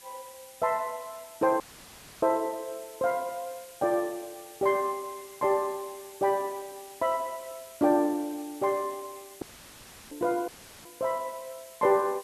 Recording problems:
hiss; SNR 19 dB
dropout; at 1.5 s for 0.5 s, at 9.5 s for 0.5 s and at 10 s; filled with static

